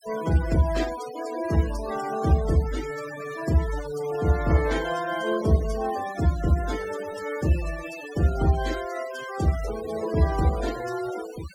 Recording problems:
denoising artefacts; signal-to-artefact ratio 14 dB

